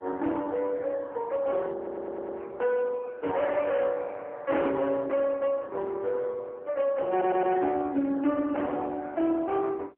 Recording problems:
telephone audio; 240 Hz to 3.4 kHz, AMR-NB
distortion; hard clipping, signal-to-distortion ratio 11 dB
audio stuttering; at 2 s and at 7 s

